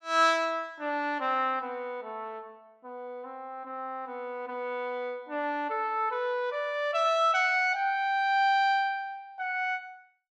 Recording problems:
none

